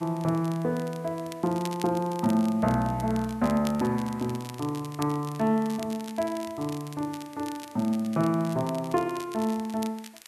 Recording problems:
hiss; SNR 27 dB
crackle; vinyl, SNR 18 dB

